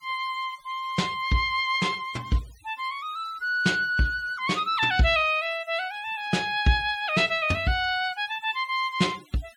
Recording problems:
denoising artefacts; signal-to-artefact ratio 23 dB

